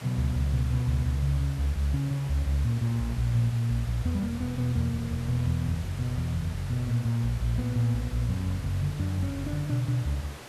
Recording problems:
hiss; slope -4 dB per octave, SNR 16 dB

